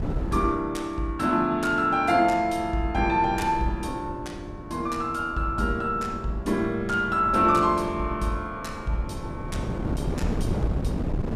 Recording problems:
wind on the microphone; below 270 Hz, SNR 9 dB

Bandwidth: 15 kHz